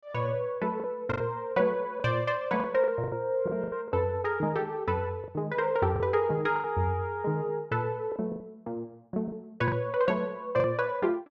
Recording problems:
packet loss; 8% of the sound replaced, filled with the last packet

